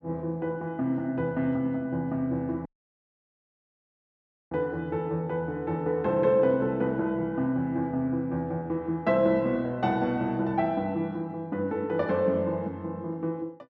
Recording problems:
audio cutting out; at 2.5 s for 2 s

